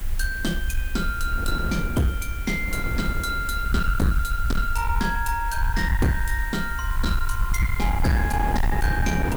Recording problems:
distortion; soft clipping, signal-to-distortion ratio 7 dB
hiss; SNR 15 dB
low-frequency rumble; below 68 Hz, SNR 2 dB
wind on the microphone; below 350 Hz, SNR 6 dB

